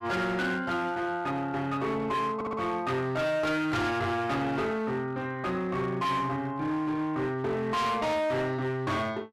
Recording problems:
distortion; hard clipping, signal-to-distortion ratio 8 dB
audio stuttering; at 2.5 s

